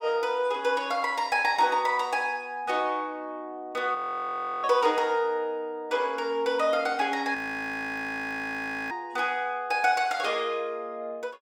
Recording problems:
frozen audio; at 4 s for 0.5 s and at 7.5 s for 1.5 s

